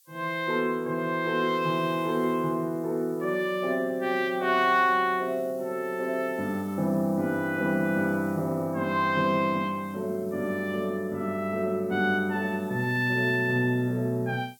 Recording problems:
background hiss; slope +5 dB per octave, SNR 27 dB

